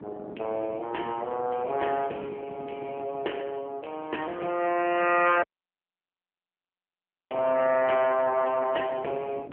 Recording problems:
telephone audio; 320 Hz to 2.9 kHz, AMR-NB
wind on the microphone; below 460 Hz, SNR 17 dB
audio cutting out; at 5.5 s for 2 s

